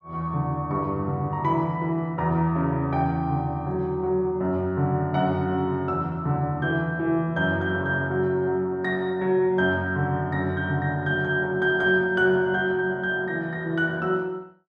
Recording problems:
none

